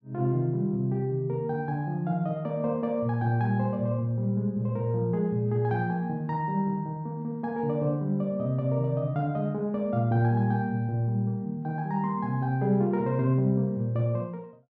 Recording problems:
none

